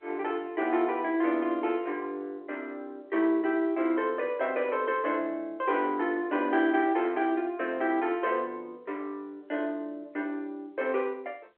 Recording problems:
telephone audio; 280 Hz to 3.4 kHz, G.711

